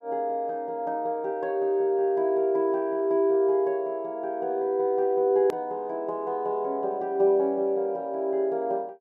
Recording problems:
click at an edit; at 5.5 s

